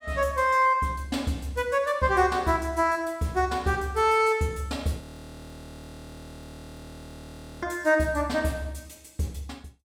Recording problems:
frozen audio; at 5 s for 2.5 s

